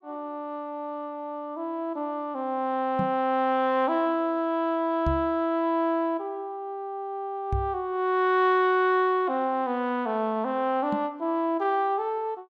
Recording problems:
microphone bump; 4 times, first at 3 s; peak +1 dB vs average level

